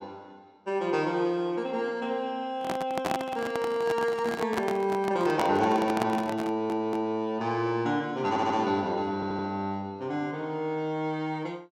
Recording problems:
microphone handling noise; from 2.5 to 7 s; peak +3 dB vs average level
stutter; at 6.5 s, at 8.5 s and at 9 s

